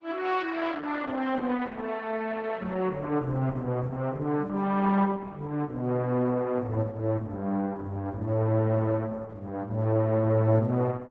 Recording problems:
codec artefacts; Opus, log-spectral distance 3 dB

